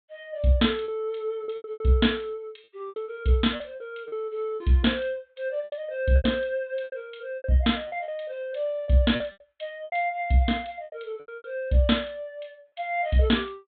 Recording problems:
low-pass filter; nothing above 4 kHz
lost packets; 10% of the sound replaced, filled with repeated pitch periods

